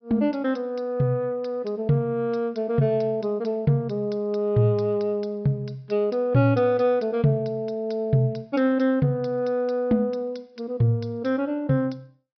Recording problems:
treble missing; nothing above 5.5 kHz

